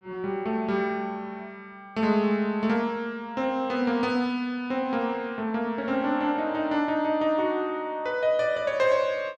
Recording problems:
none

